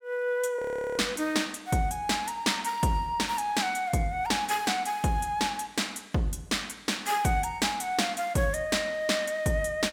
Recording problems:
frozen audio; at 0.5 s

